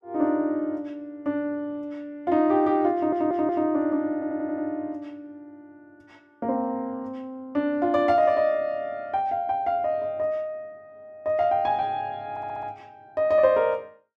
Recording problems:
stutter; at 3 s, at 4 s and at 12 s

